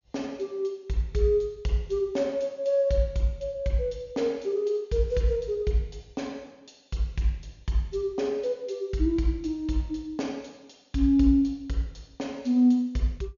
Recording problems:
treble missing; nothing above 7 kHz

